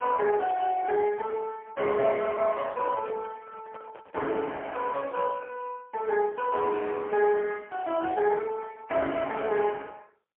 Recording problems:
telephone audio; 260 Hz to 3.3 kHz, AMR-NB, then MP3
microphone handling noise; from 2.5 to 5 s; peak -12 dB vs average level

